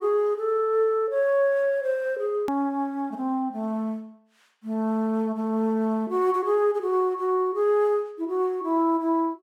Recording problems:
hard cut with a click; at 2.5 s

